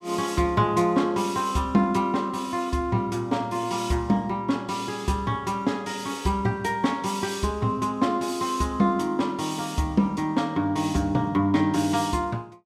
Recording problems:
none

